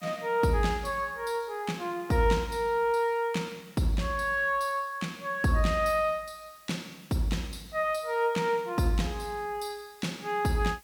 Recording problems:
background hiss; slope 0 dB per octave, SNR 26 dB

